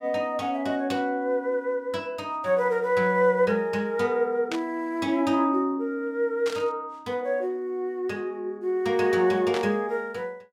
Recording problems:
burst of static; at 4.5 s, at 6.5 s and at 9.5 s; peak -3 dB vs average level

